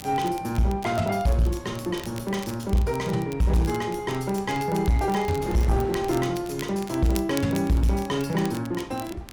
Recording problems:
distorted audio; soft clipping, signal-to-distortion ratio 10 dB
wind on the microphone; below 500 Hz, SNR 17 dB
crackle; vinyl, SNR 18 dB

